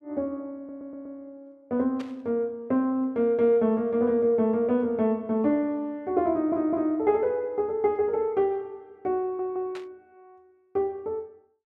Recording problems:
audio stuttering; at 0.5 s, at 6.5 s and at 9 s
burst of static; at 2 s and at 10 s; peak -13 dB vs average level

